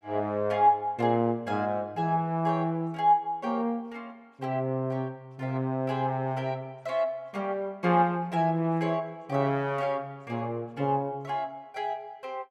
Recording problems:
none

